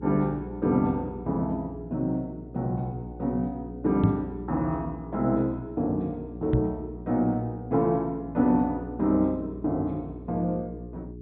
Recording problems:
low-pass filter; nothing above 4 kHz
electrical hum; 60 Hz, harmonics up to 420 Hz, SNR 13 dB
microphone bump; at 4 s and at 6.5 s; peak +9 dB vs average level

